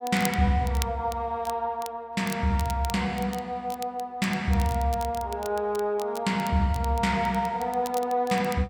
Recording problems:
crackle; vinyl, SNR 16 dB

